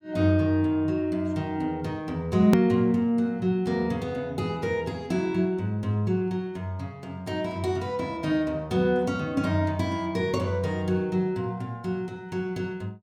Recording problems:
edit click; at 2.5 s

